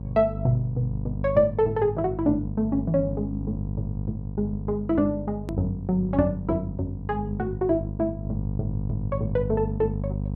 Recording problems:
hum; 50 Hz, harmonics up to 500 Hz, SNR 5 dB
click at an edit; at 5.5 s

